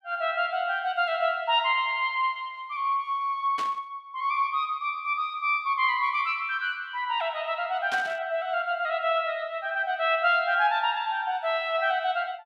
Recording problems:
burst of static; at 3.5 s and at 8 s; peak -6 dB vs average level

